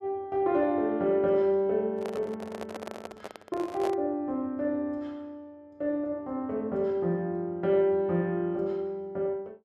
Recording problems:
handling noise; from 2 to 4 s; peak -3 dB vs average level

